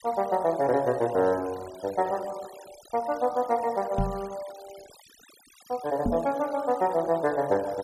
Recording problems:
denoising artefacts; signal-to-artefact ratio 21 dB
microphone bump; at 4 s and at 6 s; peak +2 dB vs average level

